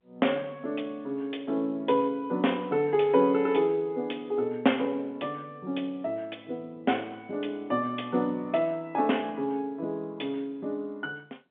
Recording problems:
phone line; 150 Hz to 3.5 kHz, G.711

